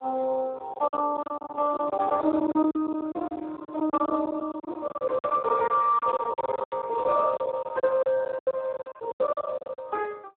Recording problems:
phone line; 260 Hz to 2.3 kHz, Speex
packet loss; 19% of the sound replaced, filled with silence
static burst; at 4 s and at 6 s; peak -14 dB vs average level

